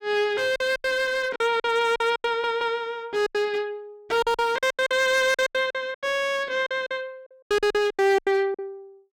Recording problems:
distortion; hard clipping, uneven, signal-to-distortion ratio 11 dB
lost packets; 16% of the sound replaced, filled with silence
audio stuttering; at 2.5 s

